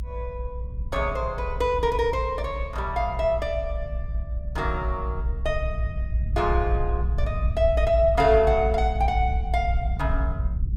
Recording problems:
rumble; below 62 Hz, strongest tone 60 Hz, SNR 3 dB

